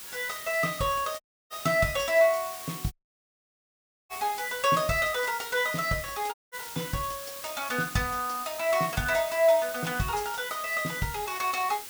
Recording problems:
background hiss; slope +1 dB per octave, SNR 11 dB
dropout; at 1 s, at 3 s for 1 s and at 6.5 s

